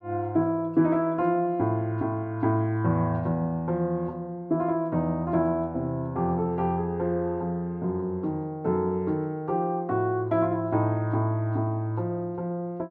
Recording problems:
none

